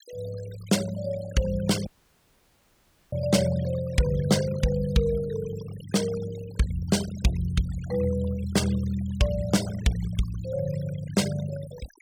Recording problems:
noise reduction artefacts; signal-to-artefact ratio 16 dB
audio cutting out; at 2 s for 1.5 s

